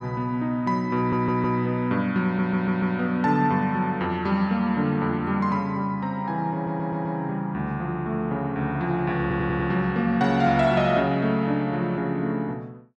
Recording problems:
audio stuttering; 4 times, first at 1 s

